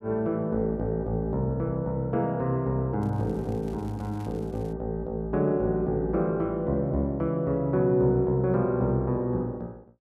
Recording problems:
crackling; from 3 to 4.5 s; loose cable, SNR 30 dB

